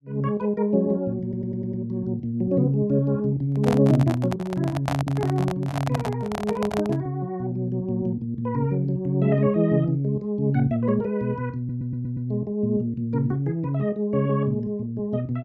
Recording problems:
stutter; at 1 s and at 12 s
handling noise; from 3.5 to 7 s; peak +1 dB vs average level

